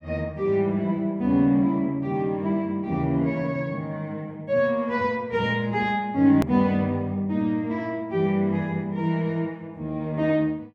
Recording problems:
hard cut with a click; at 6.5 s

